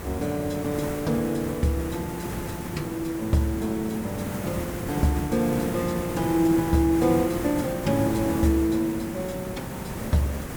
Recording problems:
hiss; slope -6 dB per octave, SNR 7 dB

